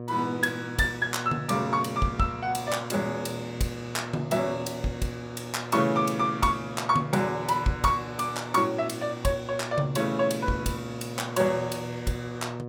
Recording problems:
mains hum; 60 Hz, harmonics up to 1.2 kHz, SNR 11 dB

